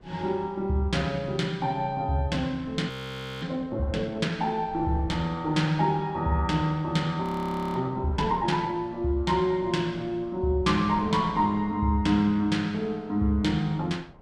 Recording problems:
wind noise; below 490 Hz, SNR 23 dB
audio freezing; at 3 s for 0.5 s and at 7 s for 0.5 s

